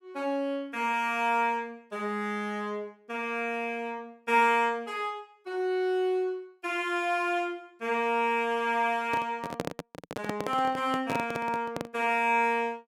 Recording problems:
microphone handling noise; from 9 to 12 s; peak +1 dB vs average level

